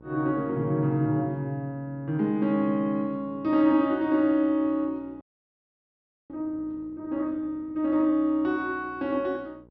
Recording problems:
low-pass filter; nothing above 5.7 kHz
hum; 60 Hz, harmonics up to 1 kHz, SNR 26 dB
audio freezing; at 5 s for 1 s

